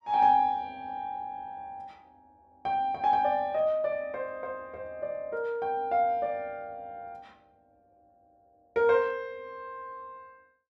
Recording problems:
none

